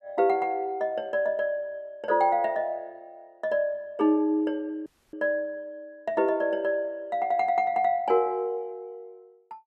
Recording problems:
audio cutting out; at 5 s

